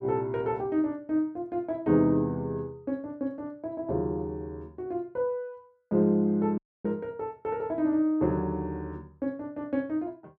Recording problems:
audio cutting out; at 6.5 s

